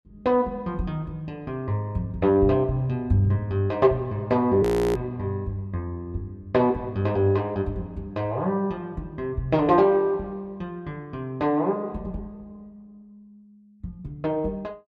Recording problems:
audio freezing; at 4.5 s

